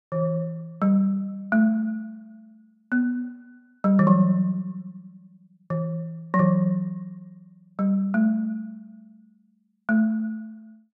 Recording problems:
none

